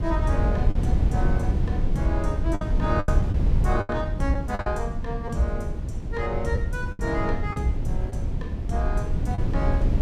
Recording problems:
low-frequency rumble; below 100 Hz, SNR -3 dB
packet loss; 6% of the sound replaced, filled with the last packet

